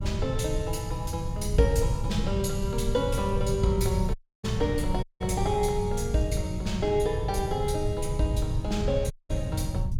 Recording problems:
low-frequency rumble; below 120 Hz, SNR 3 dB
dropout; at 4 s, at 5 s and at 9 s

